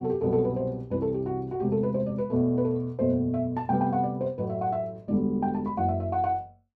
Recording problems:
none

